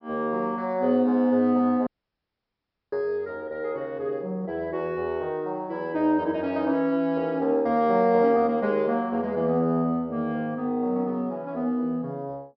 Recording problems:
treble cut off; nothing above 5.6 kHz
audio cutting out; at 2 s for 1 s

